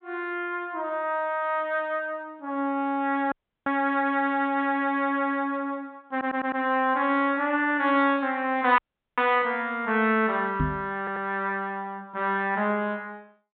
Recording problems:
treble cut off; nothing above 4 kHz
audio cutting out; at 3.5 s and at 9 s
audio stuttering; at 6 s and at 11 s
microphone thump; at 11 s; peak +2 dB vs average level

